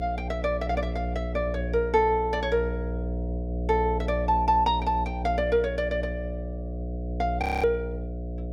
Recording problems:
hum; 60 Hz, harmonics up to 720 Hz, SNR 6 dB
audio freezing; at 7.5 s

